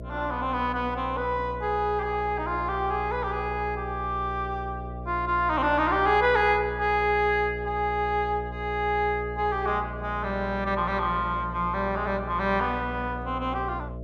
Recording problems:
hum; 60 Hz, harmonics up to 660 Hz, SNR 11 dB

